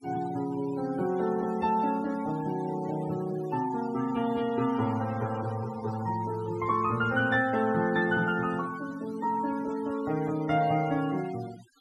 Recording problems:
denoising artefacts; signal-to-artefact ratio 17 dB

